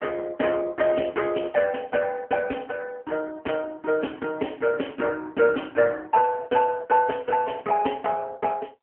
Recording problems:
telephone audio; 190 Hz to 3.2 kHz, AMR-NB

